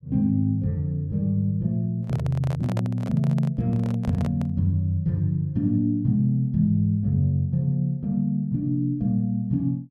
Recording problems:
handling noise; from 2 to 4.5 s; peak -6 dB vs average level

